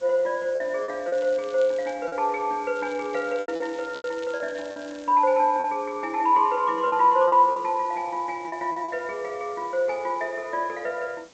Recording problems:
codec artefacts; G.722, log-spectral distance 5 dB
hiss; slope -3 dB per octave, SNR 26 dB
packet loss; 6% of the sound replaced, filled with repeated pitch periods
crackling; at 1 s and from 3 to 5 s; loose cable, SNR 26 dB

